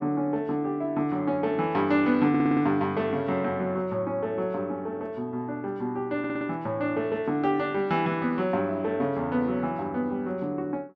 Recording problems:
audio stuttering; at 2.5 s and at 6 s

